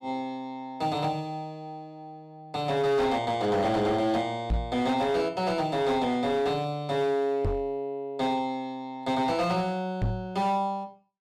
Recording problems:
distorted audio; hard clipping, uneven, signal-to-distortion ratio 12 dB
microphone thump; at 4.5 s, at 7.5 s and at 10 s; peak +3 dB vs average level

